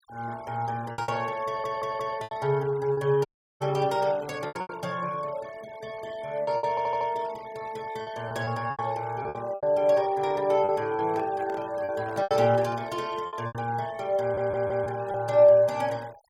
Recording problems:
noise reduction artefacts; signal-to-artefact ratio 23 dB
lost packets; 8% of the sound replaced, filled with repeated pitch periods
stutter; at 1.5 s, at 6.5 s and at 14 s
audio cutting out; at 3.5 s
handling noise; from 11 to 13 s; peak -11 dB vs average level

